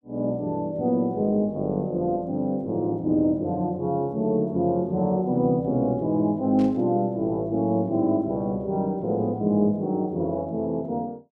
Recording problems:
burst of static; at 6.5 s; peak -17 dB vs average level

